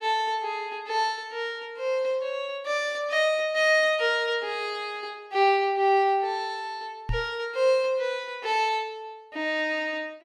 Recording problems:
microphone thump; at 7 s; peak -1 dB vs average level

